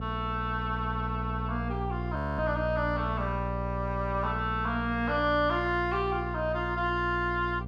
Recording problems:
electrical hum; 60 Hz, harmonics up to 720 Hz, SNR 5 dB
frozen audio; at 2 s

